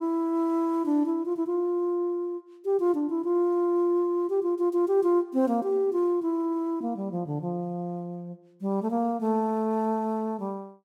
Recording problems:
none

